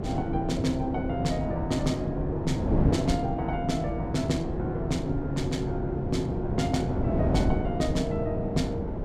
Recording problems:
wind noise; below 350 Hz, SNR 0 dB

